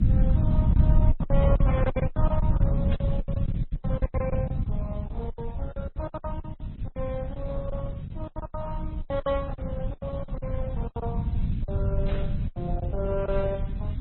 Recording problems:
lossy compression; Opus, then MP3, log-spectral distance 2 dB, nothing above 4 kHz
hiss; SNR 27 dB
rumble; below 130 Hz, SNR -6 dB
packet loss; 17% of the sound replaced, filled with silence
static burst; at 1.5 s, at 3 s and at 12 s; peak -6 dB vs average level

